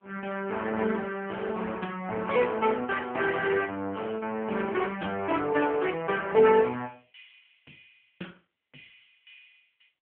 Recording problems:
phone line; 260 Hz to 3.1 kHz, AMR-NB

